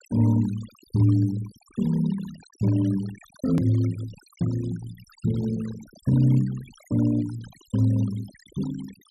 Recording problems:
noise reduction artefacts; signal-to-artefact ratio 21 dB
hard cut with a click; at 3.5 s

